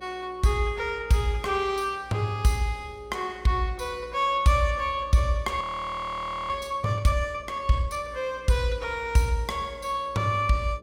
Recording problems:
hum; 60 Hz, harmonics up to 600 Hz, SNR 25 dB
audio freezing; at 5.5 s for 1 s

